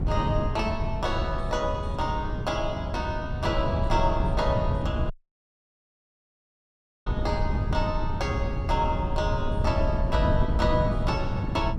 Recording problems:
hum; 60 Hz, harmonics up to 660 Hz, SNR 19 dB
wind noise; below 150 Hz, SNR 0 dB
audio cutting out; at 5 s for 2 s

